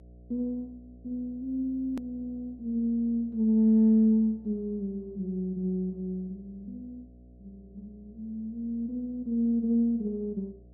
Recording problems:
electrical hum; 60 Hz, harmonics up to 720 Hz, SNR 25 dB
edit click; at 2 s

